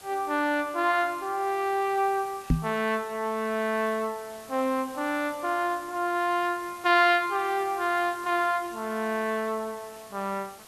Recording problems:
hiss; slope -2 dB per octave, SNR 20 dB
microphone thump; at 2.5 s; peak +6 dB vs average level

